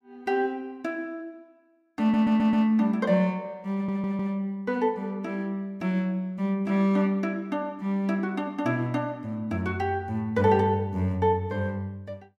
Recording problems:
stutter; at 2 s and at 3.5 s

